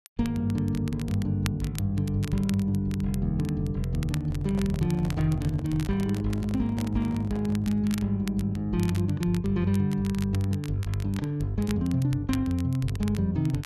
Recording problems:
crackling; vinyl, SNR 18 dB
packet loss; 0.9% of the sound replaced, filled with repeated pitch periods
handling noise; from 4 to 8 s; peak -10 dB vs average level

